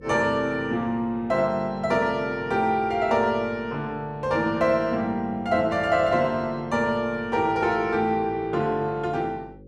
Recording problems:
electrical hum; 50 Hz, harmonics up to 550 Hz, SNR 22 dB

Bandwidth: 13 kHz